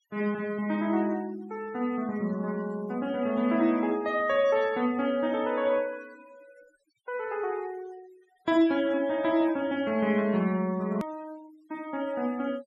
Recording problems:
denoising artefacts; signal-to-artefact ratio 22 dB
hard cut with a click; at 11 s

